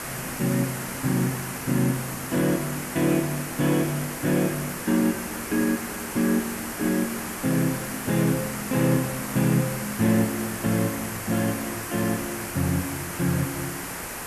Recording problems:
background hiss; SNR 6 dB

